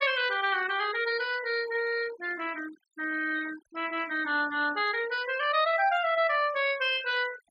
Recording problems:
denoising artefacts; signal-to-artefact ratio 17 dB

